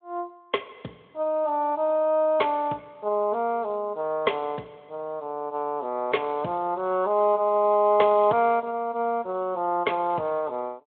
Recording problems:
telephone audio; 260 Hz to 3.4 kHz, Speex

